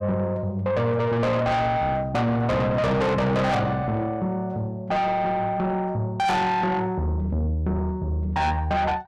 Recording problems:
distorted audio; soft clipping, signal-to-distortion ratio 6 dB

